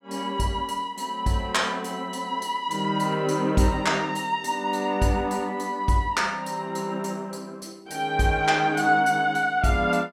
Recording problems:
none

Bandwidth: 16.5 kHz